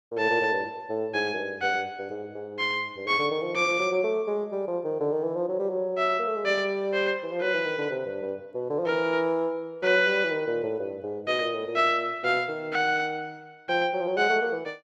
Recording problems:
none

